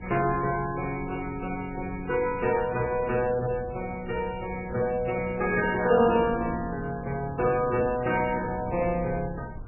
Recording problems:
codec artefacts; MP3, log-spectral distance 3 dB
wind noise; below 160 Hz, SNR 15 dB

